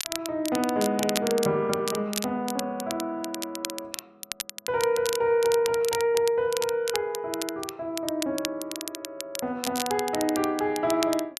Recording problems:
crackling; vinyl, SNR 8 dB

